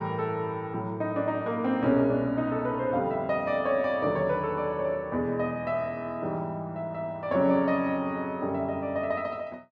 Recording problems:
none

